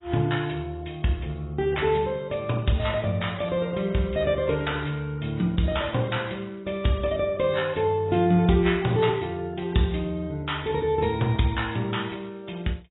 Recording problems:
codec artefacts; AAC, log-spectral distance 4 dB, nothing above 3.8 kHz

